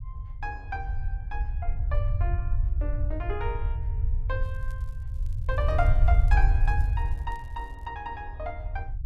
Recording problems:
low-frequency rumble; below 74 Hz, SNR -7 dB
crackle; from 4.5 to 8 s; loose cable, SNR 27 dB

